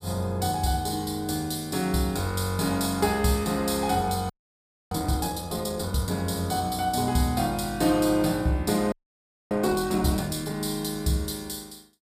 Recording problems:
frozen audio; at 4.5 s for 0.5 s and at 9 s for 0.5 s

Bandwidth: 15 kHz